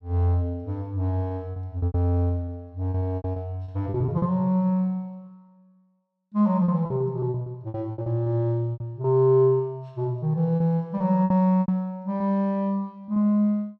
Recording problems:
packet loss; 11% of the sound replaced, filled with repeated pitch periods

